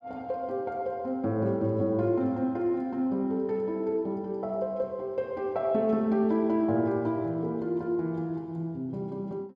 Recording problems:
none

